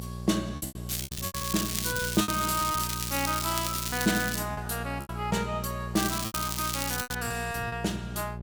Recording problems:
mains hum; 60 Hz, harmonics up to 840 Hz, SNR 7 dB
lost packets; 11% of the sound replaced, filled with repeated pitch periods
crackle; from 1 to 4.5 s and from 6 to 7 s; loose cable, SNR 2 dB

